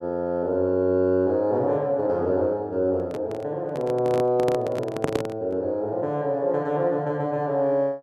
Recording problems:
handling noise; from 3 to 5.5 s; peak +3 dB vs average level

